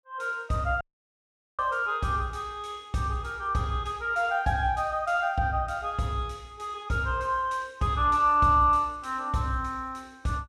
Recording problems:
dropout; at 1 s for 1 s

